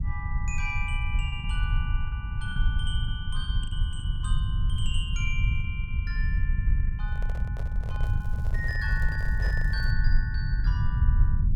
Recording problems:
rumble; below 82 Hz, SNR -8 dB
packet loss; 6% of the sound replaced, filled with the last packet
handling noise; from 7 to 10 s; peak -2 dB vs average level
crackle; from 8 to 10 s; loose cable, SNR 23 dB

